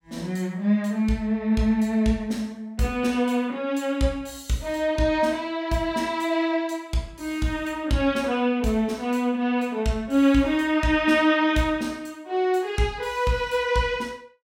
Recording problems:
none

